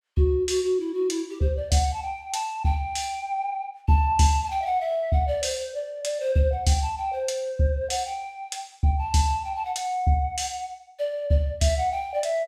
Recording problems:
none

